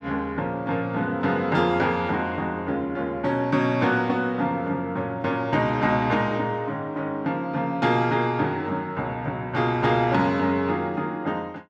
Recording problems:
none

